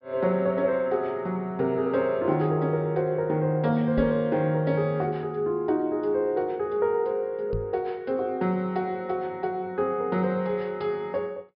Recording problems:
treble missing; nothing above 5.5 kHz
knock on the microphone; at 4 s and at 7.5 s; peak -1 dB vs average level

